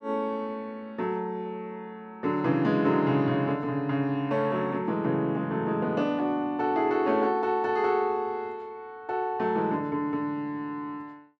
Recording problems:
none

